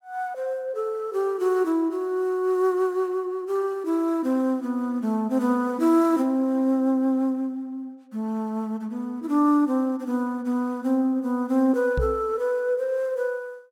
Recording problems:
microphone bump; at 12 s; peak +1 dB vs average level

